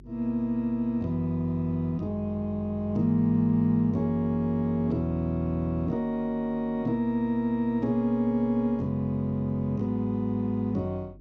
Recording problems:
hum; 50 Hz, harmonics up to 400 Hz, SNR 23 dB

